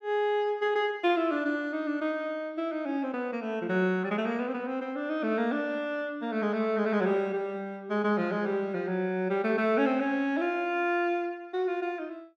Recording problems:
none

